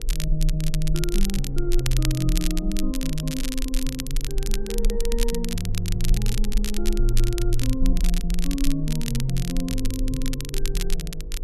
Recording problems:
electrical hum; 50 Hz, harmonics up to 500 Hz, SNR 14 dB
low-frequency rumble; below 36 Hz, strongest tone 20 Hz, SNR 1 dB
wind on the microphone; below 400 Hz, SNR 24 dB
crackle; vinyl, SNR 5 dB

